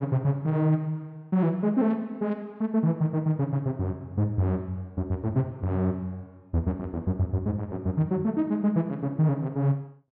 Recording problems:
none

